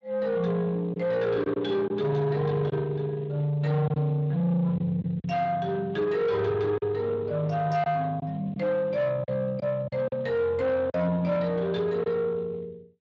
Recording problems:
codec artefacts; Speex, log-spectral distance 2 dB
distorted audio; soft clipping, signal-to-distortion ratio 10 dB
packet loss; 4% of the sound replaced, filled with silence

